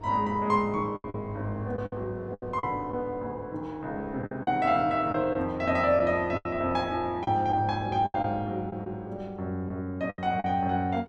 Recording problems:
wind noise; below 530 Hz, SNR 19 dB
lost packets; 8% of the sound replaced, filled with the last packet

